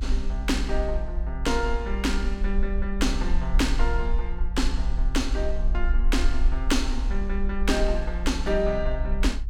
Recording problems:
rumble; below 54 Hz, SNR 0 dB

